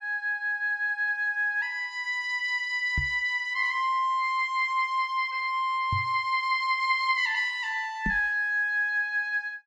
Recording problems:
microphone bump; at 3 s, at 6 s and at 8 s; peak -1 dB vs average level

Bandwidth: 13 kHz